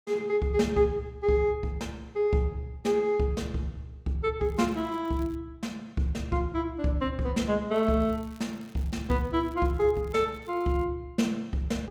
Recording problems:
crackle; at 4.5 s and from 7.5 to 11 s; loose cable, SNR 28 dB

